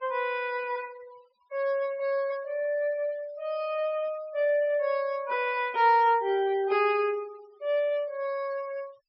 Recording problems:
treble cut off; nothing above 5.6 kHz
noise reduction artefacts; signal-to-artefact ratio 25 dB

